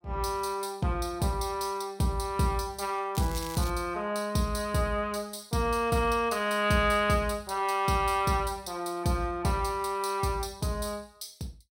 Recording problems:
crackle; at 3 s; loose cable, SNR 13 dB

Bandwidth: 16.5 kHz